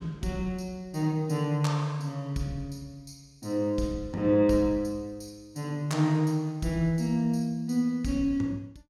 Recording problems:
none

